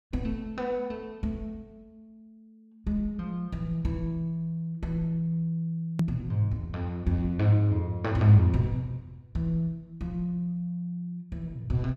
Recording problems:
hard cut with a click; at 6 s

